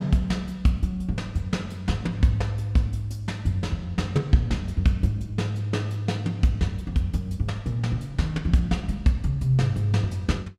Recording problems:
none

